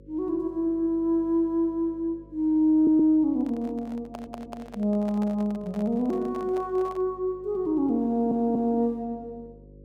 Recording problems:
hum; 50 Hz, harmonics up to 550 Hz, SNR 25 dB
audio stuttering; at 3 s, at 4 s and at 8 s
handling noise; from 3.5 to 7 s; peak -11 dB vs average level

